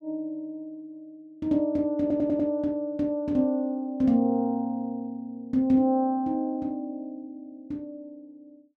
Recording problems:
stutter; at 2 s

